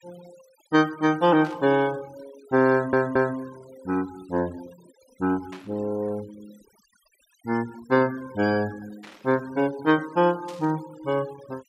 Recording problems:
noise reduction artefacts; signal-to-artefact ratio 22 dB
static burst; 4 times, first at 1.5 s; peak -15 dB vs average level
stutter; at 2.5 s

